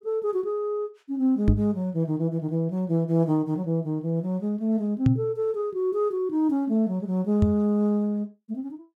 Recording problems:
knock on the microphone; at 1.5 s, at 5 s and at 7.5 s; peak +8 dB vs average level

